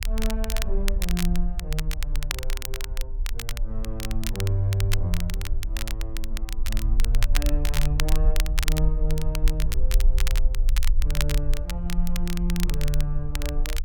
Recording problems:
rumble; below 44 Hz, strongest tone 20 Hz, SNR -4 dB
crackle; vinyl, SNR 3 dB

